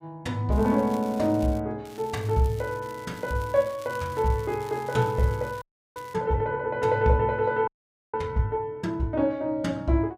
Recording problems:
crackle; from 0.5 to 1.5 s and from 2 to 6 s; loose cable, SNR 23 dB
frozen audio; at 5.5 s and at 7.5 s

